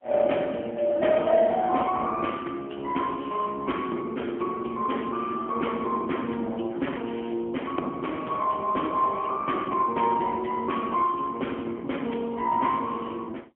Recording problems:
telephone audio; 220 Hz to 3.3 kHz, AMR-NB, then MP3

